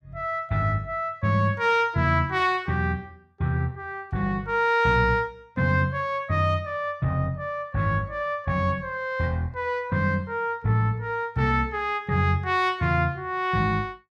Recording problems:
none

